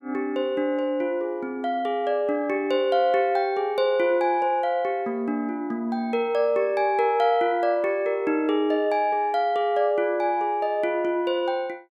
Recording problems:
none

